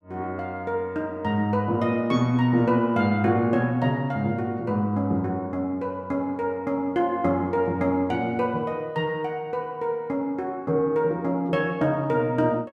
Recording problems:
none

